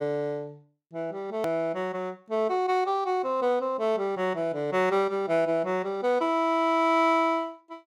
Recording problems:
hard cut with a click; at 1.5 s

